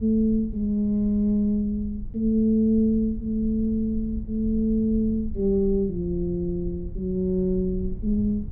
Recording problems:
rumble; below 76 Hz, SNR 13 dB

